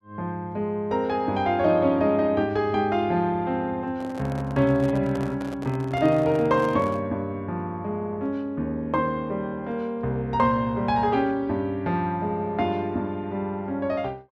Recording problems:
microphone handling noise; from 4 to 7 s; peak -8 dB vs average level

